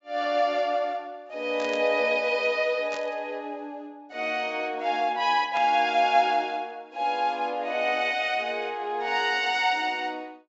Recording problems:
low-pass filter; nothing above 8 kHz
burst of static; at 1.5 s, at 3 s and at 5.5 s; peak -9 dB vs average level

